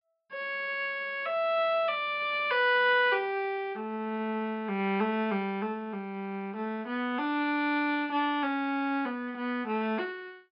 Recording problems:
low-pass filter; nothing above 5.5 kHz

